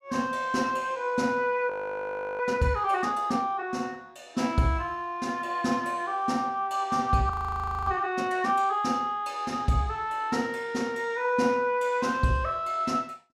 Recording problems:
frozen audio; at 1.5 s for 0.5 s and at 7.5 s for 0.5 s

